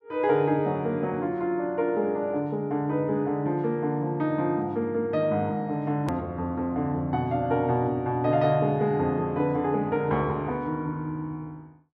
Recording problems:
click at an edit; at 6 s

